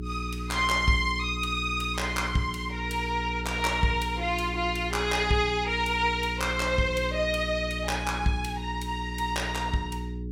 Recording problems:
hum; 60 Hz, harmonics up to 420 Hz, SNR 8 dB

